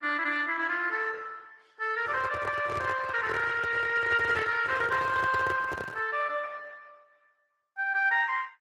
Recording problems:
lossy codec; Opus, then Opus, log-spectral distance 4 dB
handling noise; from 2 to 6 s; peak -5 dB vs average level

